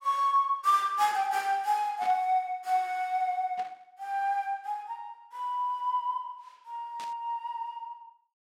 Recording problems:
burst of static; at 2 s, at 3.5 s and at 7 s; peak -11 dB vs average level

